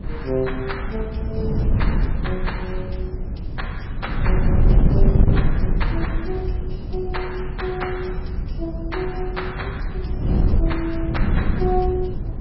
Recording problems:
lossy codec; MP3, log-spectral distance 2 dB, nothing above 5.3 kHz
wind noise; below 120 Hz, SNR -5 dB

